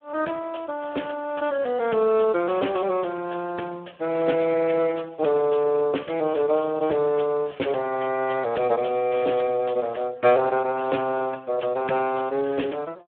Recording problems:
telephone audio; 260 Hz to 2.9 kHz, Speex

